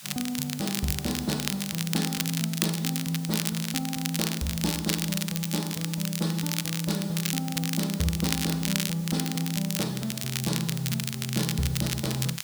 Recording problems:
hiss; slope +3 dB per octave, SNR 13 dB
crackle; vinyl, SNR 2 dB

